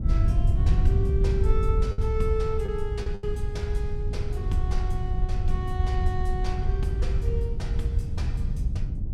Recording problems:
wind on the microphone; below 88 Hz, SNR -7 dB
lost packets; 2% of the sound replaced, filled with the last packet

